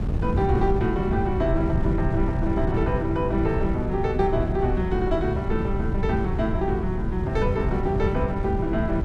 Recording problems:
wind noise; below 140 Hz, SNR 2 dB

